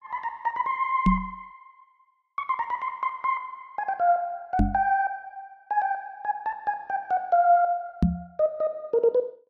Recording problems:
knock on the microphone; at 1 s, at 4.5 s and at 8 s; peak +8 dB vs average level

